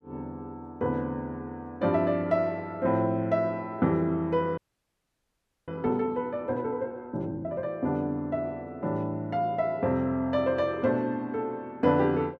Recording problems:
audio freezing; at 4.5 s for 1 s

